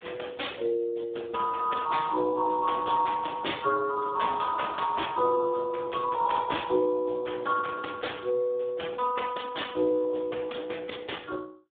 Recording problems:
telephone audio; 280 Hz to 3.5 kHz, Speex

